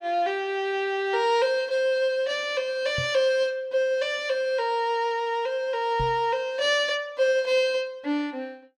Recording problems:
microphone thump; at 3 s and at 6 s; peak -4 dB vs average level

